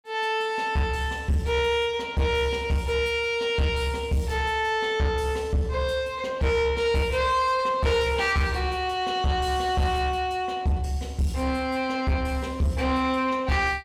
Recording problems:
distortion; soft clipping, signal-to-distortion ratio 11 dB

